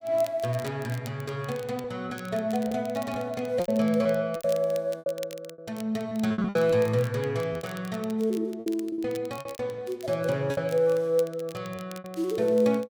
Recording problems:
crackling; vinyl, SNR 20 dB
packet loss; 9% of the sound replaced, filled with repeated pitch periods

